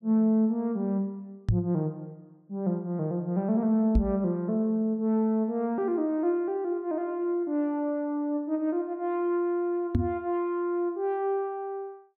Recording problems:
microphone thump; at 1.5 s, at 4 s and at 10 s; peak +8 dB vs average level

